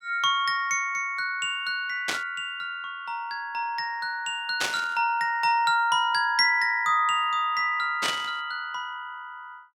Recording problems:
static burst; at 2 s, at 4.5 s and at 8 s; peak +2 dB vs average level

